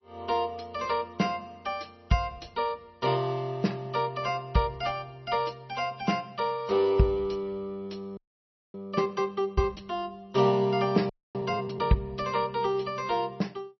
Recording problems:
codec artefacts; MP3, log-spectral distance 4 dB, nothing above 5.5 kHz
frozen audio; at 8 s for 0.5 s and at 11 s

